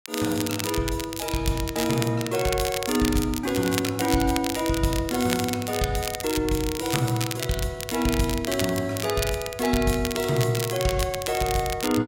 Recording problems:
crackle; vinyl, SNR 7 dB

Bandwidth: 16 kHz